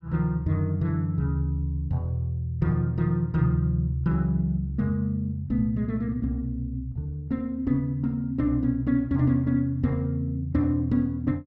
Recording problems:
none

